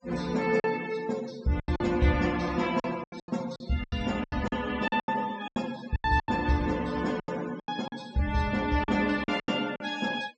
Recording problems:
low-pass filter; nothing above 8 kHz
noise reduction artefacts; signal-to-artefact ratio 17 dB
packet loss; 13% of the sound replaced, filled with silence

